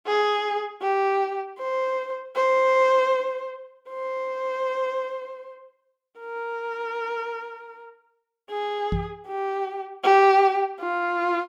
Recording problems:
microphone thump; at 9 s; peak +1 dB vs average level

